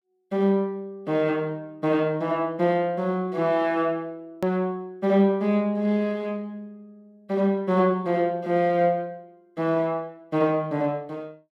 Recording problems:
click at an edit; at 4.5 s

